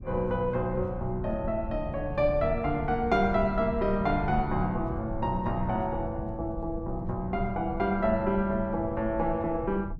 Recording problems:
rumble; below 120 Hz, SNR 10 dB

